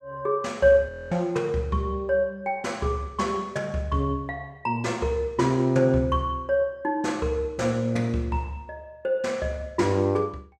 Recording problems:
frozen audio; at 1 s

